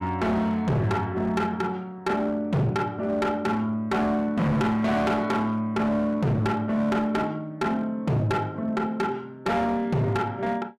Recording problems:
distorted audio; hard clipping, signal-to-distortion ratio 8 dB

